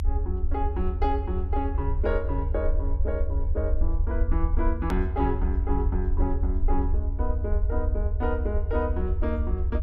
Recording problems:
low-frequency rumble; below 78 Hz, SNR -3 dB
hard cut with a click; at 5 s

